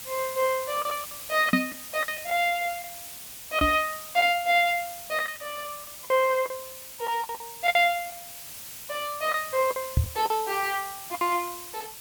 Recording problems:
hiss; slope +1 dB per octave, SNR 11 dB
lost packets; 9% of the sound replaced, filled with the last packet
microphone bump; at 1.5 s, at 3.5 s and at 10 s; peak +7 dB vs average level

